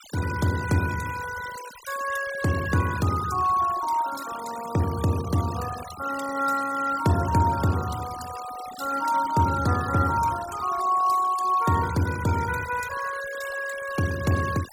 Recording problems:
denoising artefacts; signal-to-artefact ratio 14 dB

